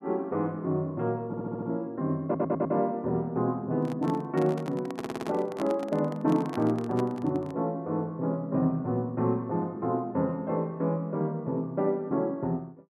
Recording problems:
audio stuttering; at 1.5 s, at 2 s and at 5 s
handling noise; from 3.5 to 7.5 s; peak -4 dB vs average level

